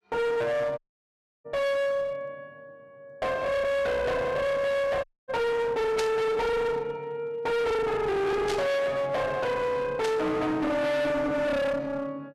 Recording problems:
distorted audio; hard clipping, uneven, signal-to-distortion ratio 5 dB
audio cutting out; at 1 s for 0.5 s and at 5 s
static burst; at 6 s, at 8.5 s and at 10 s; peak -1 dB vs average level

